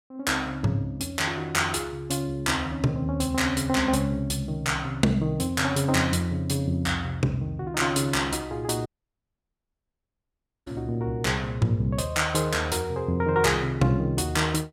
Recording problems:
dropout; at 9 s for 2 s

